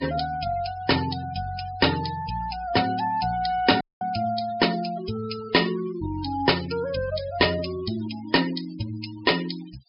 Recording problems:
treble cut off; nothing above 5.5 kHz
denoising artefacts; signal-to-artefact ratio 14 dB
dropout; at 4 s

